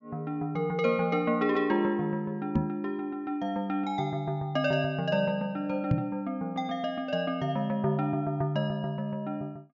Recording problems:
treble missing; nothing above 7.3 kHz
microphone bump; at 2.5 s and at 6 s; peak +7 dB vs average level

